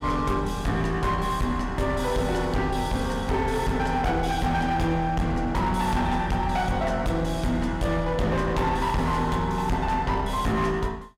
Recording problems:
distorted audio; hard clipping, signal-to-distortion ratio 11 dB

